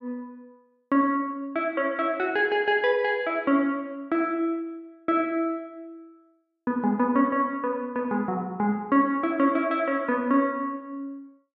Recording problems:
none

